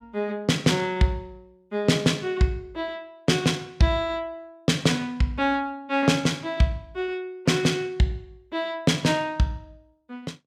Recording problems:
none

